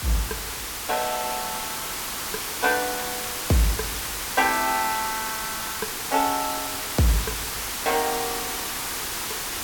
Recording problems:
background hiss; slope -1 dB per octave, SNR 2 dB

